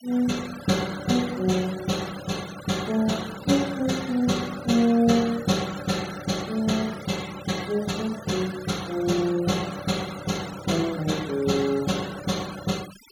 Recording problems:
denoising artefacts; signal-to-artefact ratio 15 dB

